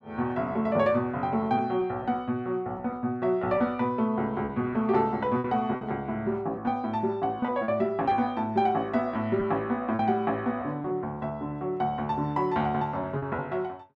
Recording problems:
lost packets; 5% of the sound replaced, filled with repeated pitch periods

